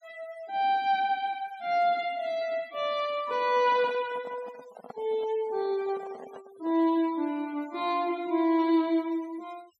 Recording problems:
noise reduction artefacts; signal-to-artefact ratio 24 dB
handling noise; from 3.5 to 7 s; peak -10 dB vs average level

